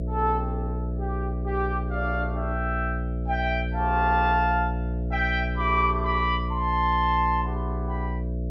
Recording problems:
mains hum; 60 Hz, harmonics up to 660 Hz, SNR 3 dB

